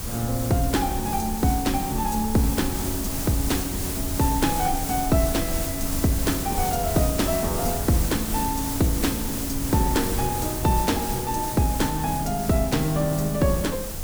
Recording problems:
background hiss; SNR 5 dB
low-frequency rumble; below 80 Hz, SNR 11 dB
wind noise; below 250 Hz, SNR 19 dB

